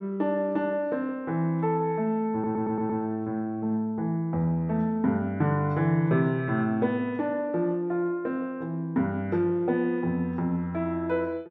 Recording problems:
stutter; at 2.5 s

